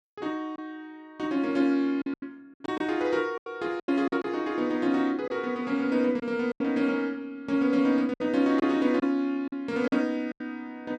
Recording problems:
packet loss; 7% of the sound replaced, filled with silence

